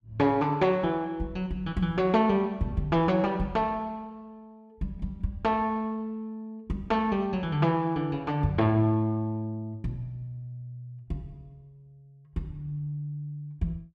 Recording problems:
none

